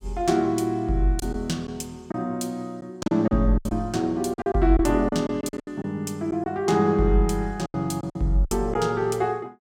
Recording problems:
lost packets; 9% of the sound replaced, filled with silence

